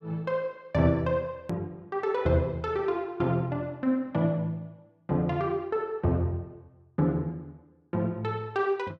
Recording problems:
click at an edit; at 1.5 s

